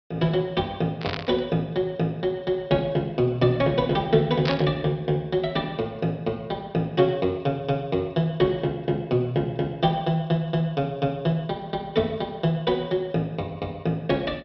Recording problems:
low-pass filter; nothing above 5.5 kHz
static burst; at 1 s and at 4.5 s; peak 0 dB vs average level

